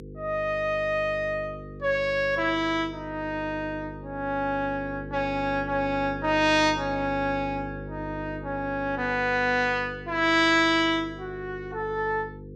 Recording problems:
electrical hum; 50 Hz, harmonics up to 500 Hz, SNR 14 dB

